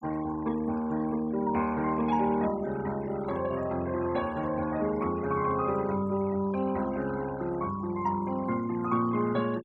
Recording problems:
denoising artefacts; signal-to-artefact ratio 18 dB

